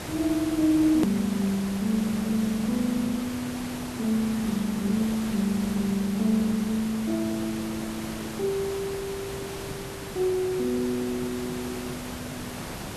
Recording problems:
background hiss; slope -4 dB per octave, SNR 9 dB
click at an edit; at 1 s

